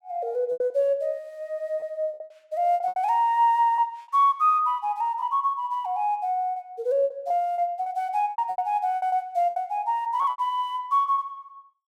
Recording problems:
packet loss; 11% of the sound replaced, filled with repeated pitch periods

